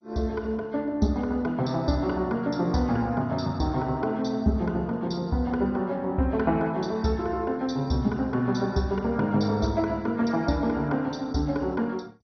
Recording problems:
codec artefacts; MP2, log-spectral distance 2 dB, nothing above 6 kHz

